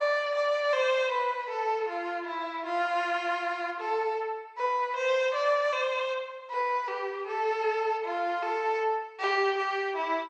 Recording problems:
lossy codec; MP2, log-spectral distance 2 dB

